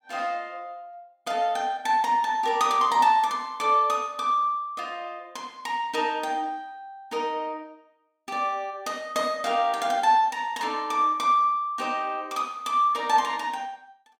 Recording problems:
none

